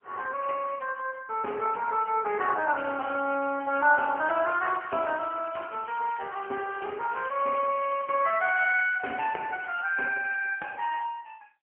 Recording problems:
phone line; 320 Hz to 3.1 kHz, AMR-NB, then MP3
crackle; from 3 to 8.5 s; loose cable, SNR 23 dB

